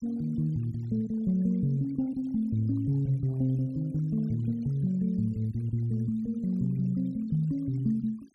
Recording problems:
noise reduction artefacts; signal-to-artefact ratio 28 dB

